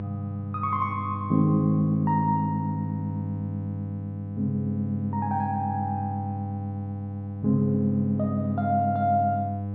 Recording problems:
hum; 50 Hz, harmonics up to 800 Hz, SNR 6 dB

